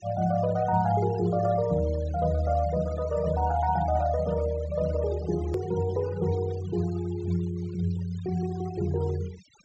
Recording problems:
treble cut off; nothing above 8 kHz
noise reduction artefacts; signal-to-artefact ratio 20 dB
click at an edit; at 5.5 s

